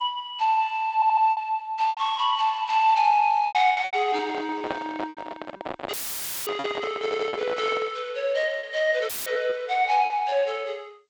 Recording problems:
lossy compression; G.722, log-spectral distance 2 dB
packet loss; 8% of the sound replaced, filled with repeated pitch periods
stutter; at 1 s and at 7 s
microphone handling noise; from 4 to 8 s; peak -2 dB vs average level
dropout; at 6 s for 0.5 s and at 9 s; filled with static

